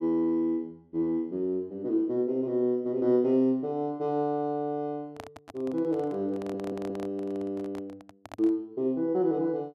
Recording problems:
handling noise; from 5 to 8.5 s; peak -8 dB vs average level
audio stuttering; at 6.5 s

